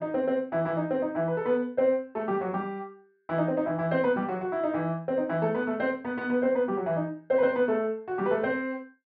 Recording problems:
treble cut off; nothing above 5.5 kHz

